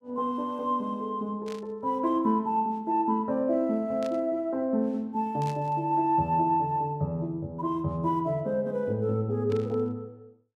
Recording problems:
static burst; 4 times, first at 1.5 s; peak -13 dB vs average level

